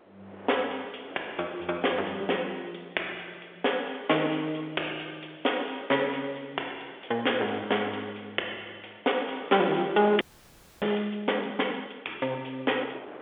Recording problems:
telephone audio; 320 Hz to 3.5 kHz, G.711
distortion; hard clipping, signal-to-distortion ratio 18 dB
wind on the microphone; below 1 kHz, SNR 20 dB
frozen audio; at 10 s for 0.5 s

